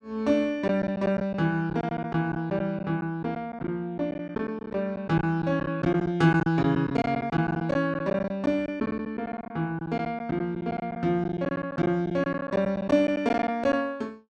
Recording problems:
lost packets; 11% of the sound replaced, filled with silence

